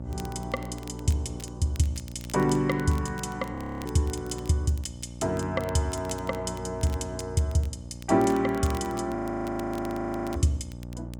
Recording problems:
electrical hum; 60 Hz, harmonics up to 900 Hz, SNR 11 dB
crackle; vinyl, SNR 21 dB
frozen audio; at 3.5 s and at 9 s for 1 s

